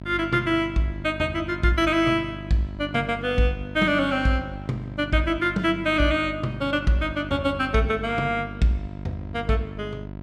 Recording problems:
hum; 50 Hz, harmonics up to 1.1 kHz, SNR 13 dB

